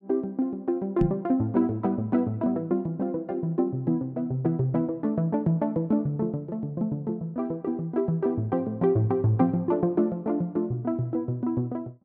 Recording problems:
microphone bump; at 1 s; peak +5 dB vs average level

